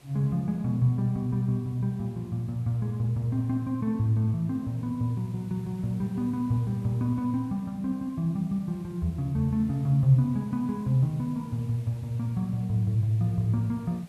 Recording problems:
background hiss; slope -4 dB per octave, SNR 29 dB

